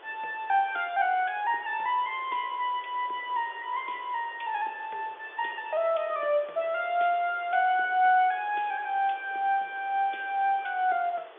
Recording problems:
phone line; 320 Hz to 3.7 kHz, G.711
background hiss; SNR 22 dB

